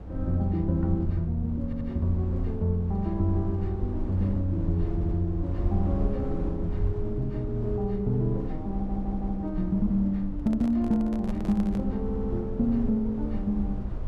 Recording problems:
rumble; below 84 Hz, SNR 7 dB
audio stuttering; 4 times, first at 1.5 s
microphone handling noise; from 10 to 12 s; peak -9 dB vs average level

